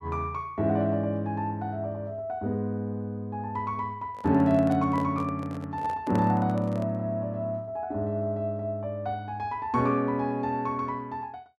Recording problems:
handling noise; from 4 to 7 s; peak -3 dB vs average level

